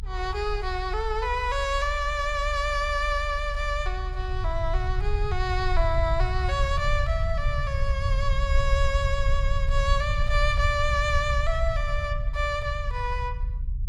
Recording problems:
rumble; below 68 Hz, SNR 1 dB

